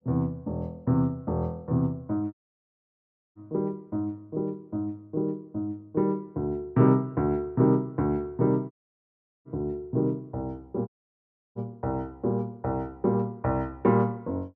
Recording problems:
audio cutting out; at 2.5 s for 1 s, at 8.5 s for 0.5 s and at 11 s for 0.5 s

